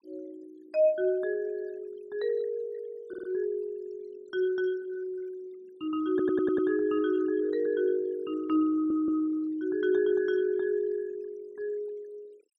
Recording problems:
noise reduction artefacts; signal-to-artefact ratio 26 dB
audio stuttering; at 3 s, at 6 s and at 8.5 s

